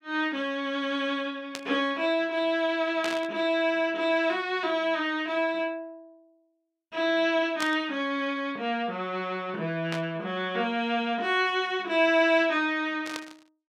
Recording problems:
burst of static; 5 times, first at 1.5 s; peak -2 dB vs average level

